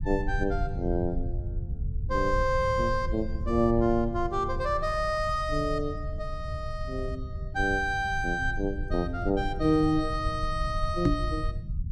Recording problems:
low-frequency rumble; below 90 Hz, SNR 6 dB
microphone bump; at 11 s; peak +7 dB vs average level

